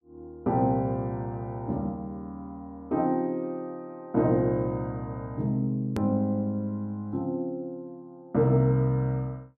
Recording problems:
edit click; at 6 s

